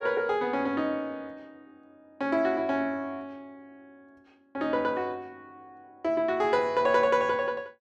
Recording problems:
none

